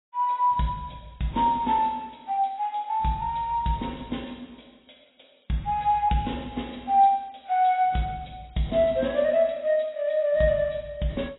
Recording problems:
lossy codec; AAC, log-spectral distance 4 dB, nothing above 3.9 kHz

